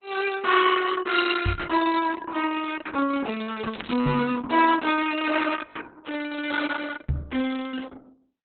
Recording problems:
lossy codec; Opus, log-spectral distance 6 dB, nothing above 4.1 kHz
microphone bump; at 1.5 s, at 4 s and at 7 s; peak +5 dB vs average level
crackling; at 3.5 s; loose cable, SNR 14 dB

